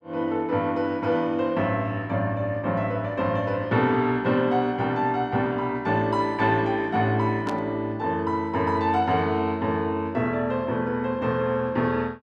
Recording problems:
burst of static; at 7.5 s; peak -10 dB vs average level

